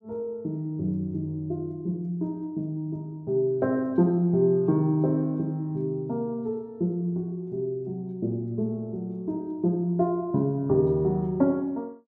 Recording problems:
none

